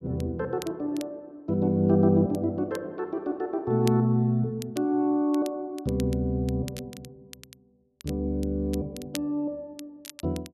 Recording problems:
crackle; vinyl, SNR 19 dB

